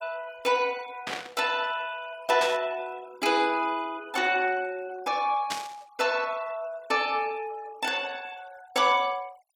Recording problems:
denoising artefacts; signal-to-artefact ratio 22 dB
burst of static; at 1 s, at 2.5 s and at 5.5 s; peak 0 dB vs average level

